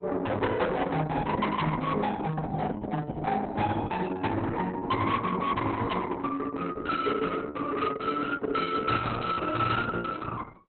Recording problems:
codec artefacts; Opus, log-spectral distance 3 dB, nothing above 4.1 kHz
distorted audio; soft clipping, signal-to-distortion ratio 10 dB

